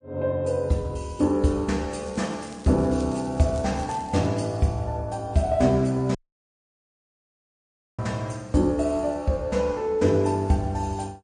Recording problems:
lossy codec; MP3, log-spectral distance 2 dB, nothing above 9 kHz
crackle; from 2 to 4.5 s; loose cable, SNR 24 dB
audio cutting out; at 6 s for 2 s

